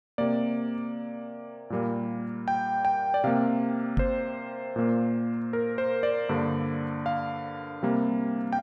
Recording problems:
knock on the microphone; at 4 s; peak +5 dB vs average level

